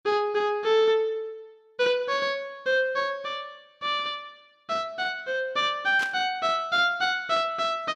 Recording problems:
burst of static; at 6 s; peak -4 dB vs average level

